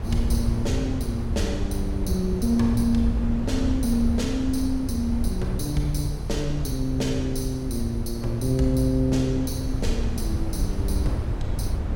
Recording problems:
wind on the microphone; below 100 Hz, SNR 3 dB

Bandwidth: 16.5 kHz